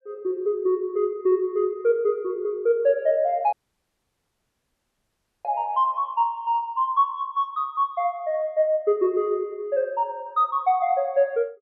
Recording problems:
dropout; at 3.5 s for 2 s

